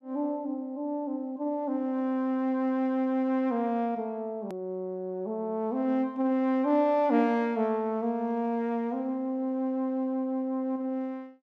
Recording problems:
edit click; at 4.5 s

